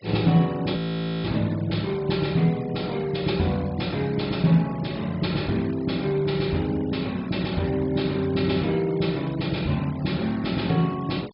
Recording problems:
low-pass filter; nothing above 5.5 kHz
noise reduction artefacts; signal-to-artefact ratio 21 dB
frozen audio; at 1 s

